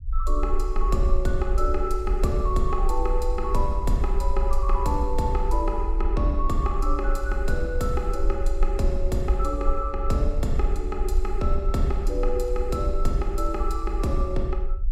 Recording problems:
rumble; below 44 Hz, strongest tone 22 Hz, SNR 0 dB

